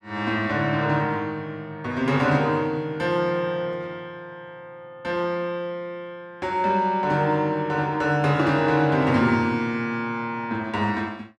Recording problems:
none

